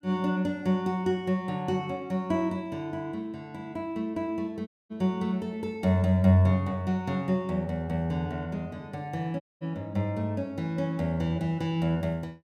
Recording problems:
audio cutting out; at 4.5 s and at 9.5 s

